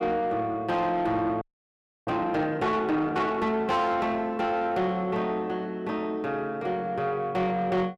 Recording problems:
distorted audio; soft clipping, signal-to-distortion ratio 12 dB
frozen audio; at 1.5 s for 0.5 s

